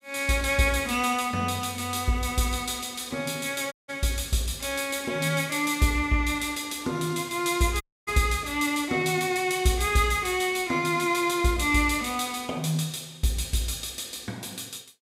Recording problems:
dropout; at 3.5 s and at 8 s

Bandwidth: 15.5 kHz